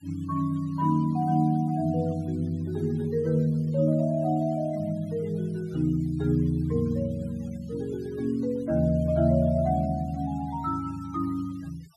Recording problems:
noise reduction artefacts; signal-to-artefact ratio 28 dB

